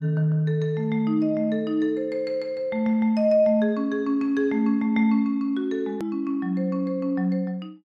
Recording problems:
edit click; at 6 s

